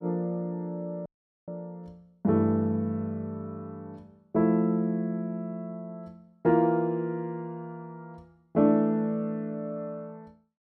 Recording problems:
audio cutting out; at 1 s

